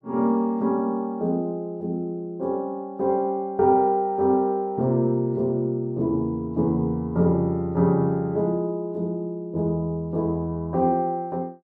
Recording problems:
none

